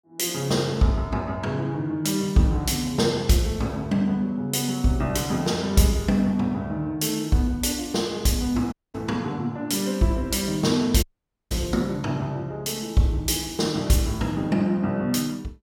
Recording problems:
audio cutting out; at 8.5 s and at 11 s

